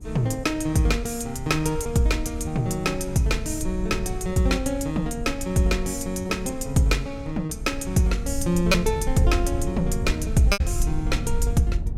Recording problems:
rumble; below 84 Hz, SNR 8 dB
packet loss; 3% of the sound replaced, filled with repeated pitch periods

